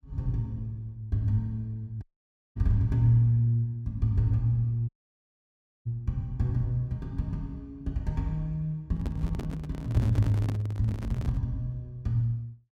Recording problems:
audio cutting out; at 2 s for 0.5 s and at 5 s for 1 s
microphone handling noise; from 9 to 11 s; peak -1 dB vs average level

